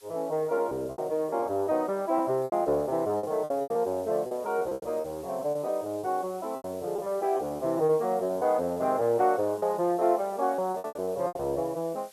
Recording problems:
hiss; slope +2 dB per octave, SNR 24 dB
lost packets; 12% of the sound replaced, filled with repeated pitch periods

